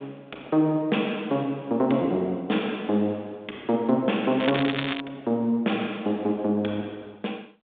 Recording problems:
telephone audio; 190 Hz to 3.7 kHz, G.726
crackling; at 4.5 s; loose cable, SNR 5 dB

